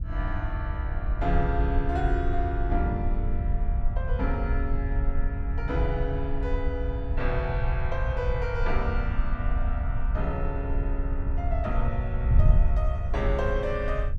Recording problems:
wind on the microphone; below 70 Hz, SNR -3 dB

